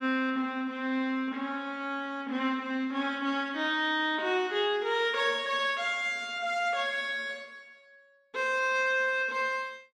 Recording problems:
none

